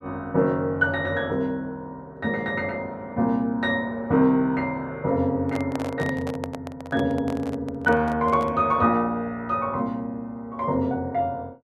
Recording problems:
handling noise; from 5.5 to 8.5 s; peak -3 dB vs average level

